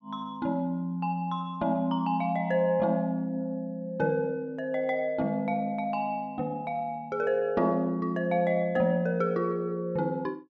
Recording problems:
none

